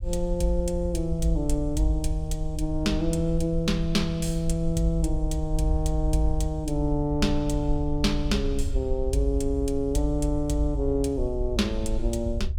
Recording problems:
low-frequency rumble; below 62 Hz, SNR 6 dB

